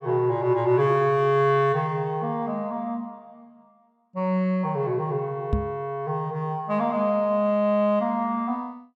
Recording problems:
microphone bump; at 5.5 s; peak +3 dB vs average level

